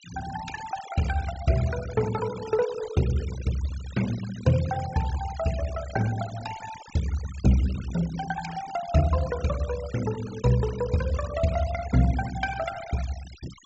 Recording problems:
treble cut off; nothing above 7.7 kHz
denoising artefacts; signal-to-artefact ratio 14 dB

